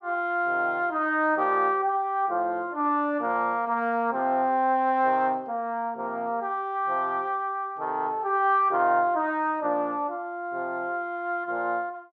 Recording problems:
none

